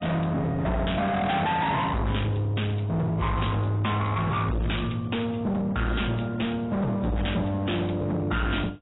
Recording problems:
lossy codec; AAC, log-spectral distance 3 dB, nothing above 3.8 kHz
distorted audio; hard clipping, uneven, signal-to-distortion ratio 5 dB

